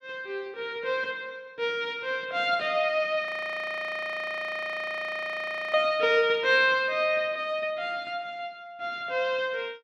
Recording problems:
audio freezing; at 3.5 s for 2.5 s

